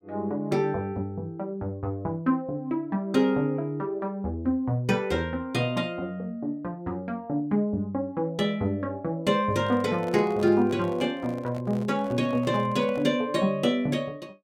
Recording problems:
handling noise; from 9.5 to 13 s; peak -10 dB vs average level

